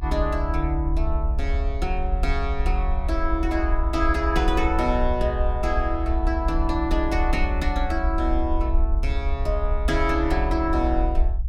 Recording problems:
low-frequency rumble; below 58 Hz, SNR 0 dB

